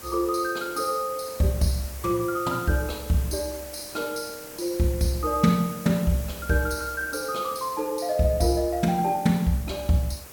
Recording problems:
hiss; SNR 15 dB

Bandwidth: 17.5 kHz